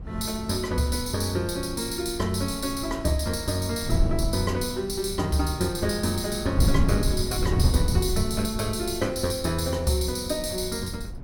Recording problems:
wind on the microphone; below 130 Hz, SNR 5 dB

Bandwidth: 17.5 kHz